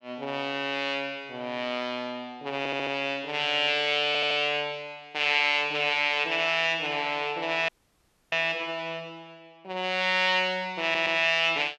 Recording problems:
audio stuttering; at 2.5 s, at 4 s and at 11 s
audio cutting out; at 7.5 s for 0.5 s

